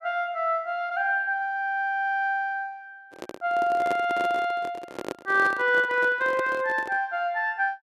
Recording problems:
handling noise; from 3 to 7 s; peak -3 dB vs average level

